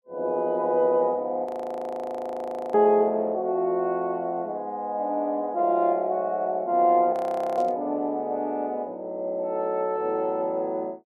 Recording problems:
frozen audio; at 1.5 s for 1.5 s and at 7 s
static burst; at 7.5 s; peak -19 dB vs average level

